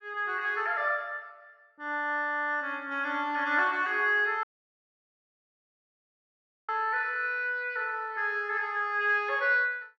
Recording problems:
audio cutting out; at 4.5 s for 2.5 s

